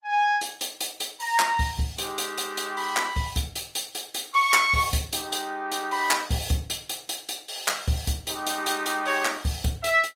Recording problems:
lossy codec; Opus, log-spectral distance 6 dB, nothing above 16.5 kHz

